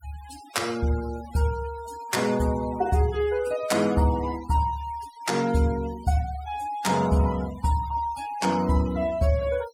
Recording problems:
denoising artefacts; signal-to-artefact ratio 18 dB

